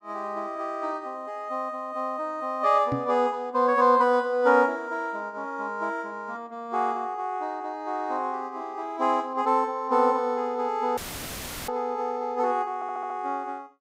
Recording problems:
knock on the microphone; at 3 s; peak +1 dB vs average level
audio cutting out; at 11 s for 0.5 s; filled with static
stutter; at 13 s

